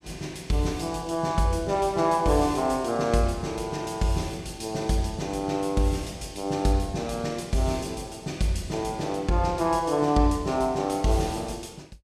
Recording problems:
none

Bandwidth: 14.5 kHz